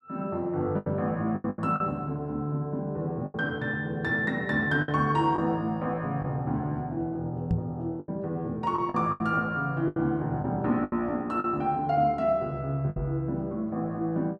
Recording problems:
lost packets; 7% of the sound replaced, filled with the last packet
knock on the microphone; at 7.5 s and at 13 s; peak +5 dB vs average level

